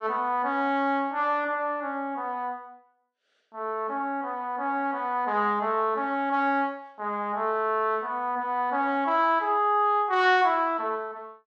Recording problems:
none

